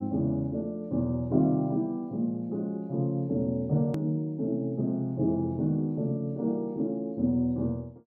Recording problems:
click at an edit; at 4 s

